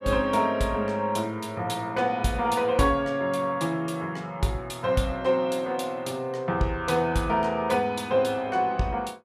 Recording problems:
none

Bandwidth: 14.5 kHz